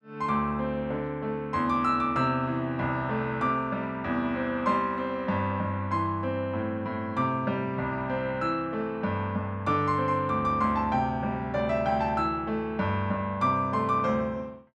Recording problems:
none

